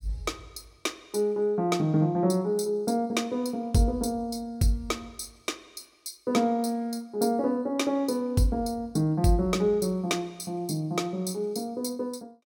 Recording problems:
none

